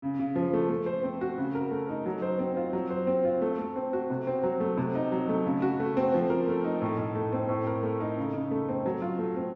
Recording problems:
none

